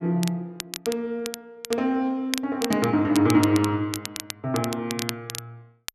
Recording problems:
crackle; vinyl, SNR 10 dB

